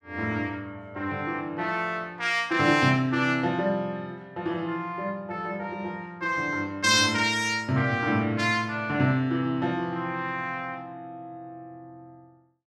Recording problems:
none

